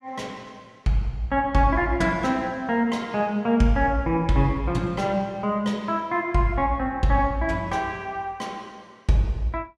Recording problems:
none

